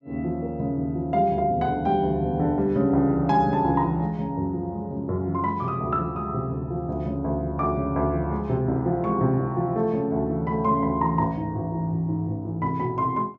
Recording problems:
none

